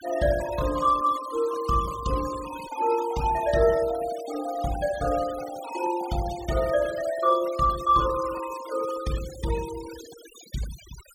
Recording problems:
denoising artefacts; signal-to-artefact ratio 15 dB

